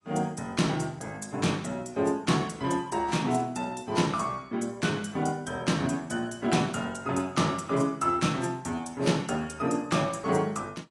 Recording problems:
lossy compression; AAC, log-spectral distance 3 dB, nothing above 10.7 kHz

